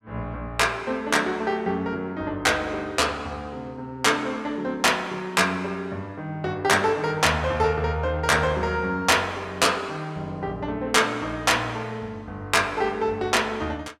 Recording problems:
none

